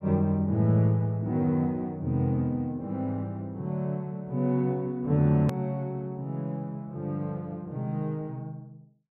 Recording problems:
hard cut with a click; at 5.5 s

